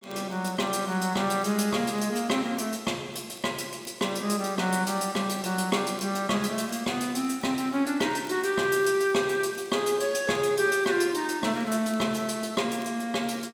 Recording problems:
crackling; vinyl, SNR 29 dB

